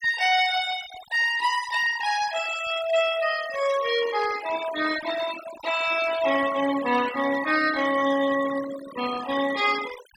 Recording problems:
noise reduction artefacts; signal-to-artefact ratio 12 dB

